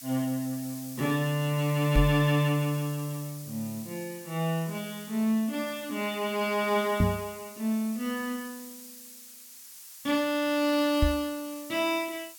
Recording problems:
background hiss; slope +5 dB per octave, SNR 15 dB
microphone thump; at 2 s, at 7 s and at 11 s; peak +7 dB vs average level

